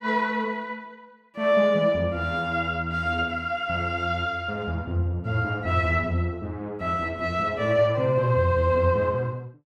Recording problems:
none

